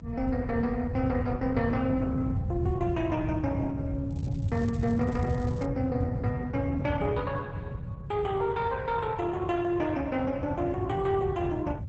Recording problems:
lossy compression; Opus, log-spectral distance 2 dB, nothing above 7.8 kHz
rumble; below 130 Hz, SNR 2 dB
crackling; from 4 to 5.5 s; loose cable, SNR 26 dB

